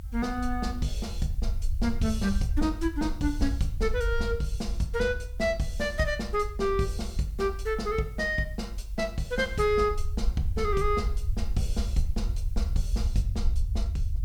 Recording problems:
hiss; slope +1 dB per octave, SNR 29 dB
rumble; below 68 Hz, SNR 3 dB

